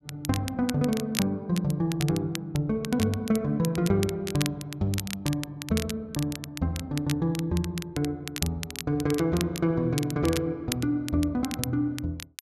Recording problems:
crackle; vinyl, SNR 10 dB

